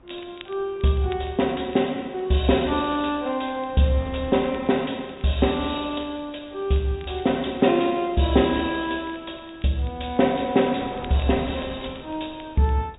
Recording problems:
treble missing; nothing above 4 kHz
wind on the microphone; below 720 Hz, SNR 22 dB
crackling; vinyl, SNR 27 dB

